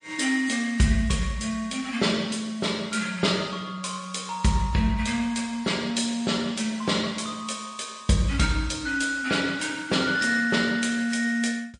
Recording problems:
codec artefacts; MP3, log-spectral distance 3 dB, nothing above 9.5 kHz

